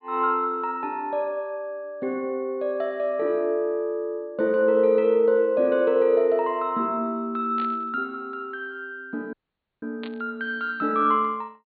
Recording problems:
treble missing; nothing above 4.5 kHz
static burst; at 7.5 s and at 10 s; peak -11 dB vs average level
audio cutting out; at 9.5 s

